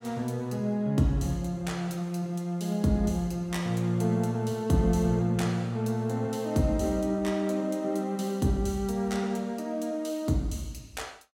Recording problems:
none

